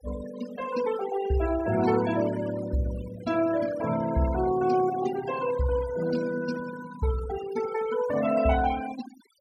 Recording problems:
denoising artefacts; signal-to-artefact ratio 12 dB

